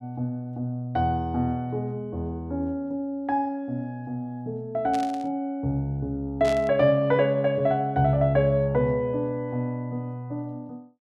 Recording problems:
burst of static; at 5 s and at 6.5 s; peak -7 dB vs average level

